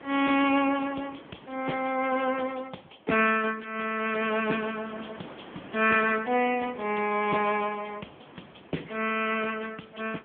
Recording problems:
phone line; 170 Hz to 3.4 kHz, AMR-NB
wind on the microphone; below 1.4 kHz, SNR 22 dB

